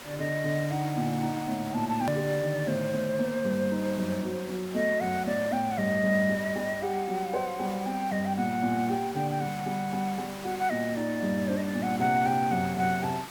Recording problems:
background hiss; slope -3 dB per octave, SNR 14 dB
edit click; at 2 s

